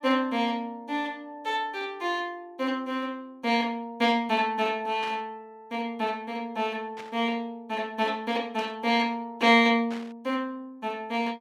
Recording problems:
static burst; 4 times, first at 5 s; peak -8 dB vs average level

